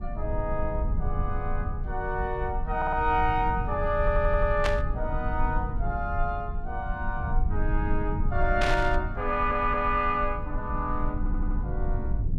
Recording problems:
rumble; below 72 Hz, strongest tone 22 Hz, SNR 3 dB
stutter; 4 times, first at 3 s
burst of static; at 4.5 s and at 8.5 s; peak +3 dB vs average level

